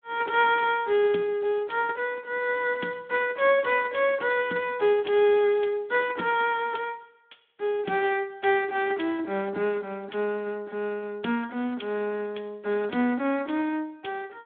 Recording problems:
telephone audio; 190 Hz to 3.5 kHz, Speex

